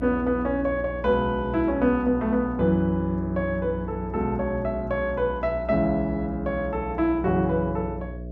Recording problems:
hum; 60 Hz, harmonics up to 660 Hz, SNR 11 dB

